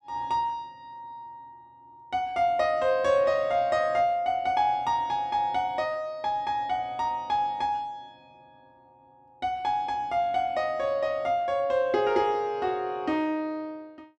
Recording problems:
none

